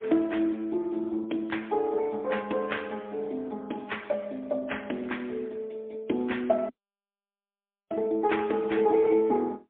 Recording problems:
telephone audio; 220 Hz to 3.5 kHz, AMR-NB, then MP3
audio cutting out; at 6.5 s for 1 s

